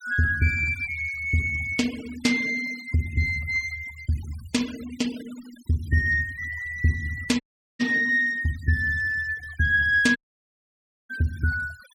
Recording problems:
noise reduction artefacts; signal-to-artefact ratio 20 dB
dropout; at 7.5 s and at 10 s for 1 s

